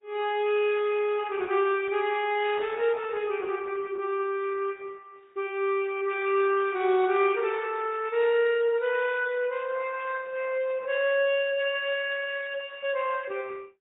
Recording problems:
low-pass filter; nothing above 3.8 kHz
lossy codec; Opus, log-spectral distance 3 dB

